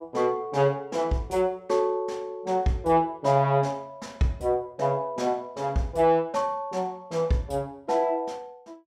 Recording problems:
none

